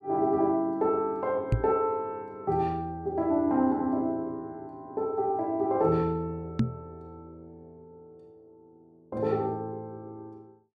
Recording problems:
knock on the microphone; at 1.5 s and at 6.5 s; peak +7 dB vs average level

